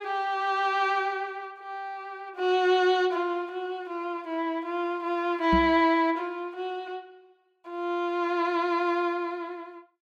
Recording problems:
microphone bump; at 5.5 s; peak +2 dB vs average level

